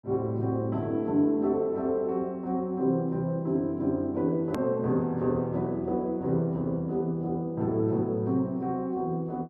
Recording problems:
click at an edit; at 4.5 s

